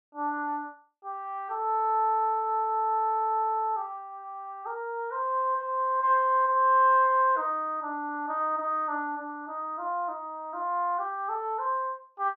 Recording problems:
none

